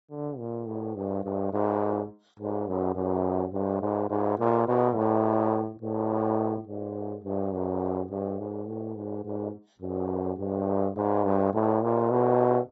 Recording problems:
codec artefacts; AAC, log-spectral distance 2 dB

